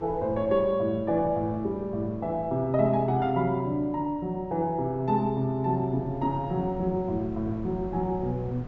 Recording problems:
low-pass filter; nothing above 8 kHz
wind on the microphone; below 280 Hz, SNR 18 dB

